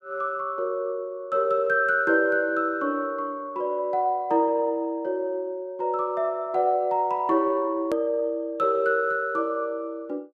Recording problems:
click at an edit; at 8 s

